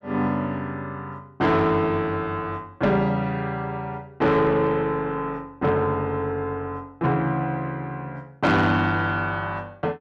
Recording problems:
distorted audio; soft clipping, signal-to-distortion ratio 12 dB

